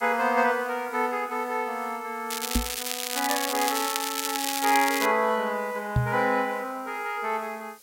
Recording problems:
background hiss; SNR 23 dB
crackling; from 2.5 to 5 s; loose cable, SNR 3 dB
microphone thump; at 2.5 s and at 6 s; peak +6 dB vs average level

